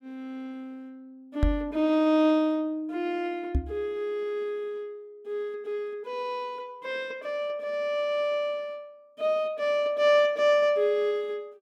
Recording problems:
knock on the microphone; at 1.5 s and at 3.5 s; peak +6 dB vs average level

